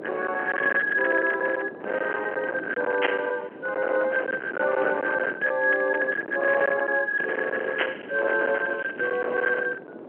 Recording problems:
telephone audio; 340 Hz to 3.2 kHz, G.711
distortion; hard clipping, uneven, signal-to-distortion ratio 11 dB
wind noise; below 1.7 kHz, SNR 9 dB
crackle; at 2 s and from 7 to 9.5 s; loose cable, SNR 27 dB

